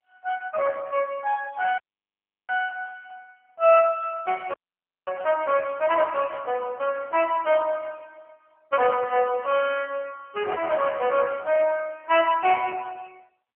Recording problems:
phone line; 370 Hz to 3 kHz, AMR-NB
dropout; at 2 s for 0.5 s and at 4.5 s for 0.5 s

